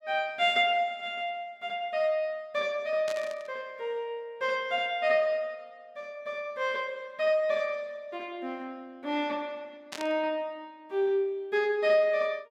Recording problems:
burst of static; at 3 s and at 10 s; peak -5 dB vs average level

